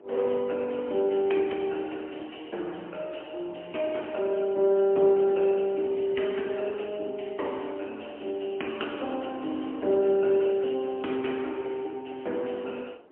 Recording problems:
phone line; 240 Hz to 3.2 kHz, AMR-NB, then MP3
wind on the microphone; below 610 Hz, SNR 21 dB

